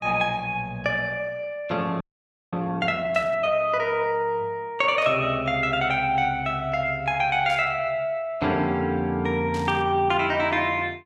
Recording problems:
frozen audio; at 2 s for 0.5 s
burst of static; 4 times, first at 3 s; peak -12 dB vs average level

